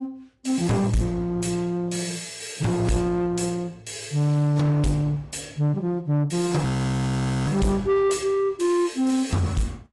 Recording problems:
lossy compression; AAC, log-spectral distance 4 dB, nothing above 10.7 kHz
distorted audio; soft clipping, signal-to-distortion ratio 10 dB
frozen audio; at 6.5 s for 1 s

